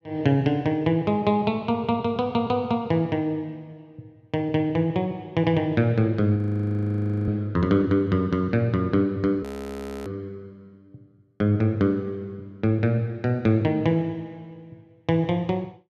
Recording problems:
frozen audio; at 6.5 s for 1 s and at 9.5 s for 0.5 s

